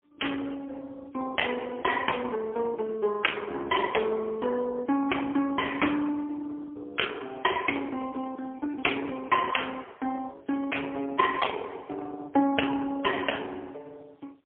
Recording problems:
telephone audio; 280 Hz to 3.3 kHz, AMR-NB, then MP3

